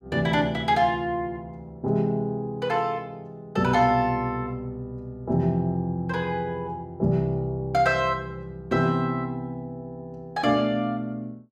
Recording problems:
none

